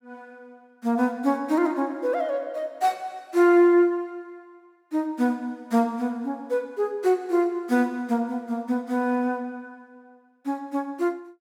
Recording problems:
none

